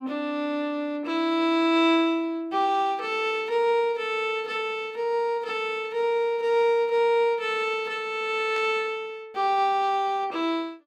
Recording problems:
burst of static; at 8.5 s; peak -11 dB vs average level

